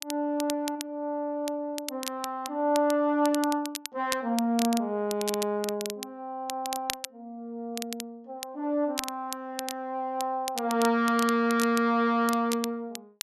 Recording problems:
crackling; vinyl, SNR 10 dB

